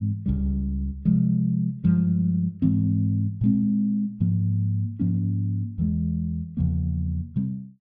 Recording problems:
none

